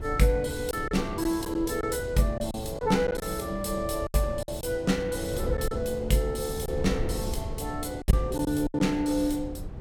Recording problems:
wind noise; below 150 Hz, SNR 9 dB
lost packets; 6% of the sound replaced, filled with silence

